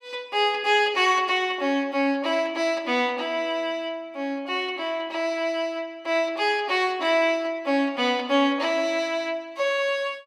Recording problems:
none

